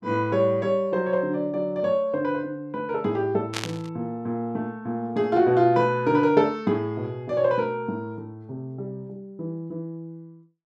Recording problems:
static burst; at 3.5 s; peak 0 dB vs average level

